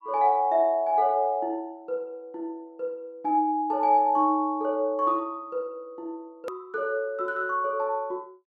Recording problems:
edit click; at 6.5 s

